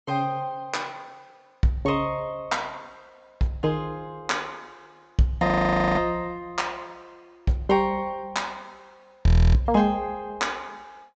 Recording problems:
treble cut off; nothing above 8 kHz
audio freezing; at 5.5 s for 0.5 s and at 9.5 s

